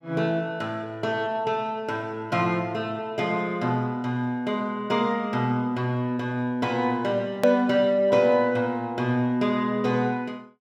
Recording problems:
hard cut with a click; at 7.5 s

